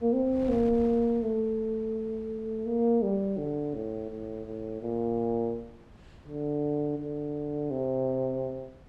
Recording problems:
wind on the microphone; below 340 Hz, SNR 21 dB

